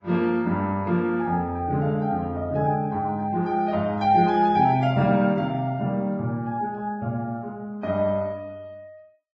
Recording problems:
lossy codec; Vorbis, log-spectral distance 2 dB

